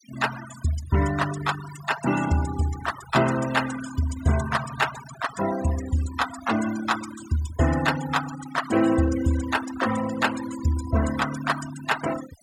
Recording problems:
noise reduction artefacts; signal-to-artefact ratio 10 dB

